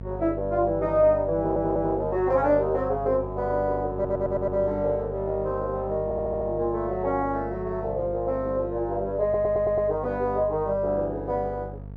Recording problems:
hum; 50 Hz, harmonics up to 700 Hz, SNR 12 dB
audio stuttering; 4 times, first at 1.5 s

